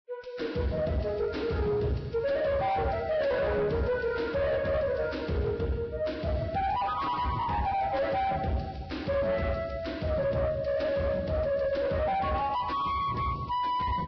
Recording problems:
lossy compression; Vorbis, log-spectral distance 3 dB, nothing above 5.5 kHz
distorted audio; soft clipping, signal-to-distortion ratio 6 dB

